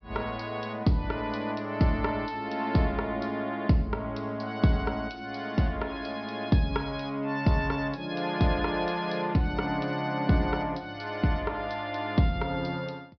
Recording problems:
treble missing; nothing above 5.5 kHz

